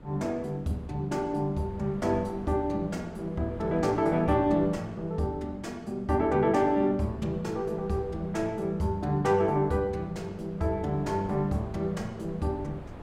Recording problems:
wind noise; below 480 Hz, SNR 17 dB

